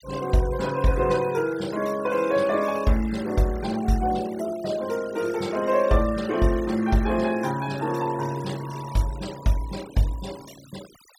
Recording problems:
noise reduction artefacts; signal-to-artefact ratio 18 dB

